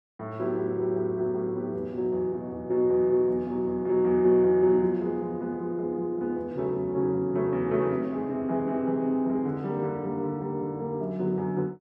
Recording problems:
none

